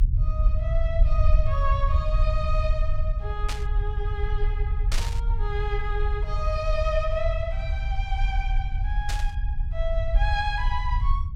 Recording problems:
rumble; below 64 Hz, SNR -5 dB
burst of static; at 3.5 s, at 5 s and at 9 s; peak +3 dB vs average level

